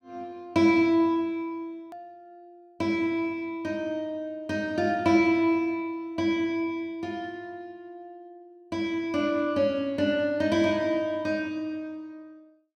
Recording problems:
hard cut with a click; at 2 s

